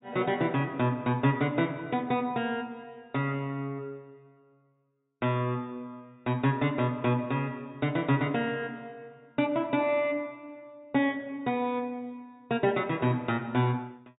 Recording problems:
treble cut off; nothing above 4 kHz

